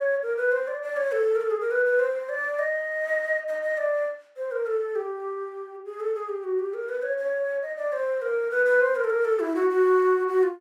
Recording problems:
none

